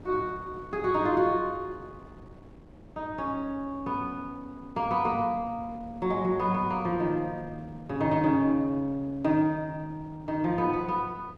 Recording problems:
wind noise; below 410 Hz, SNR 20 dB

